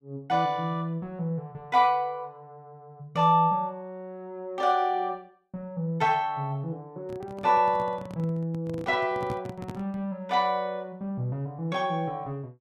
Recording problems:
microphone handling noise; from 7 to 10 s; peak -3 dB vs average level

